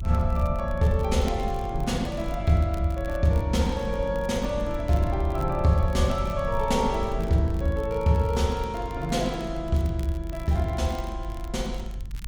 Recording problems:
low-frequency rumble; below 70 Hz, SNR 9 dB
crackling; vinyl, SNR 26 dB

